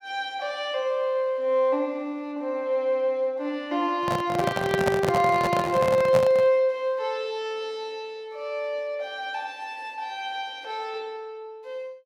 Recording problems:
handling noise; from 4 to 6.5 s; peak +4 dB vs average level

